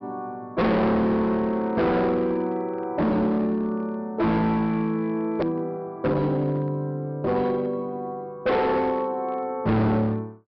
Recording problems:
low-pass filter; nothing above 5.5 kHz
distortion; hard clipping, uneven, signal-to-distortion ratio 7 dB
edit click; at 5.5 s

